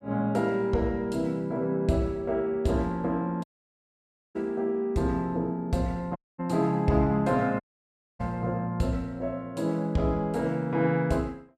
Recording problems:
audio cutting out; at 3.5 s for 1 s, at 6 s and at 7.5 s for 0.5 s

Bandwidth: 14.5 kHz